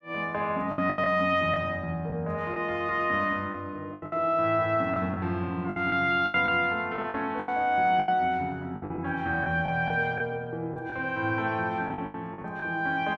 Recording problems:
packet loss; 10% of the sound replaced, filled with the last packet

